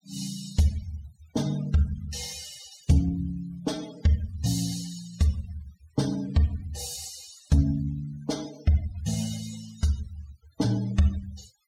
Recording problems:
denoising artefacts; signal-to-artefact ratio 18 dB

